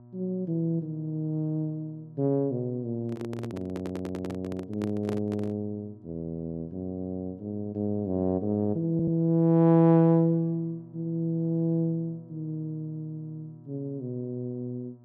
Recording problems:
hum; 60 Hz, harmonics up to 960 Hz, SNR 24 dB
microphone handling noise; from 3 to 5.5 s; peak -4 dB vs average level
stutter; at 3.5 s and at 9 s

